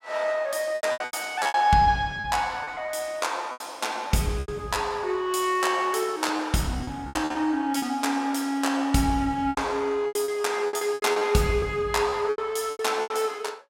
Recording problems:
lost packets; 12% of the sound replaced, filled with repeated pitch periods

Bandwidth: 16 kHz